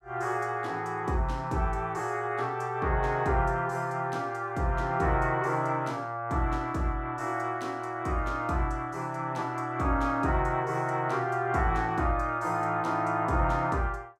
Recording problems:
none

